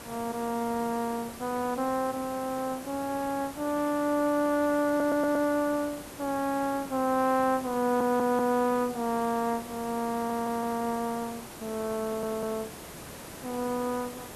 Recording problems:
background hiss; slope -5 dB per octave, SNR 13 dB
audio stuttering; 4 times, first at 5 s

